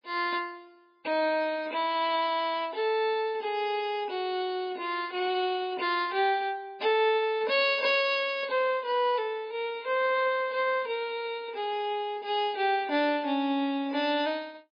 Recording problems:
lossy codec; MP3, log-spectral distance 2 dB, nothing above 5 kHz

